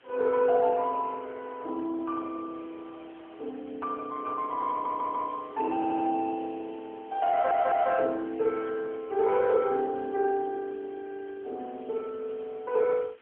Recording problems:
telephone audio; 240 Hz to 3.6 kHz, AMR-NB
hiss; SNR 29 dB
stutter; at 4.5 s, at 6 s and at 7.5 s

